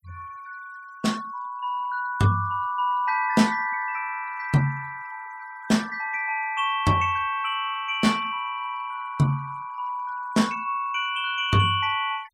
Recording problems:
noise reduction artefacts; signal-to-artefact ratio 24 dB

